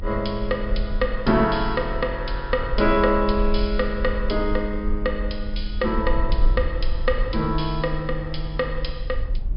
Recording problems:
treble missing; nothing above 5.5 kHz
rumble; below 46 Hz, SNR 5 dB

